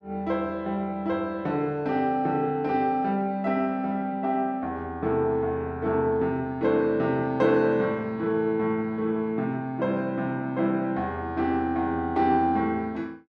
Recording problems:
none

